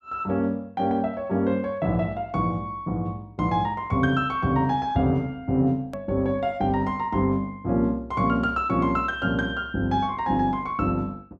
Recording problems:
click at an edit; at 6 s

